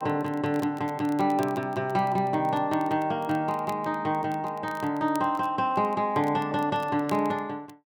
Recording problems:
crackling; vinyl, SNR 24 dB

